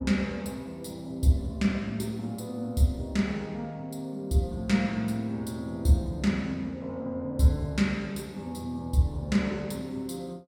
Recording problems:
none

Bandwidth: 16.5 kHz